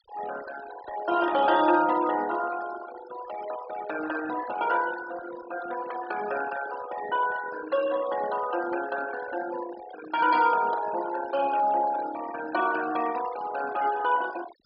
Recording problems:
treble cut off; nothing above 5.3 kHz
denoising artefacts; signal-to-artefact ratio 13 dB

